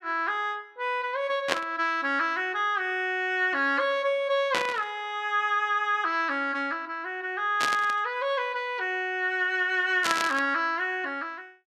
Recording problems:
burst of static; 4 times, first at 1.5 s; peak +5 dB vs average level

